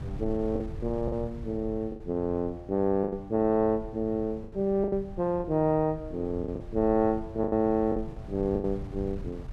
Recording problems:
wind on the microphone; below 120 Hz, SNR 14 dB
packet loss; 8% of the sound replaced, filled with the last packet

